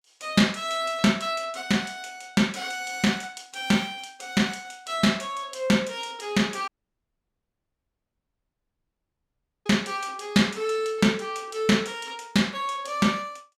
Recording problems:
dropout; at 6.5 s for 3 s

